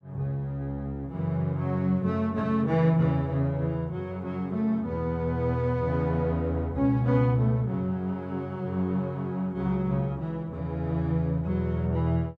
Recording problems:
none

